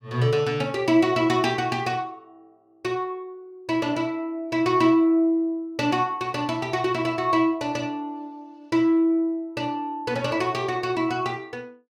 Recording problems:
none

